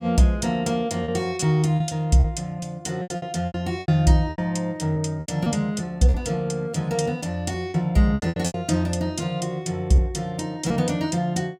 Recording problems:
lost packets; 9% of the sound replaced, filled with repeated pitch periods

